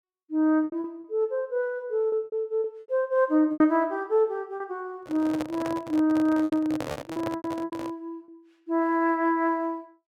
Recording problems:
packet loss; 9% of the sound replaced, filled with repeated pitch periods
microphone handling noise; from 5 to 8 s; peak -2 dB vs average level

